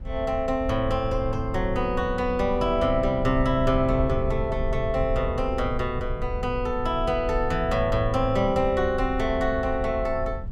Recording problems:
low-frequency rumble; below 76 Hz, SNR 8 dB

